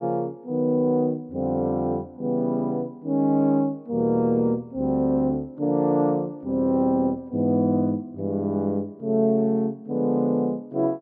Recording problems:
none

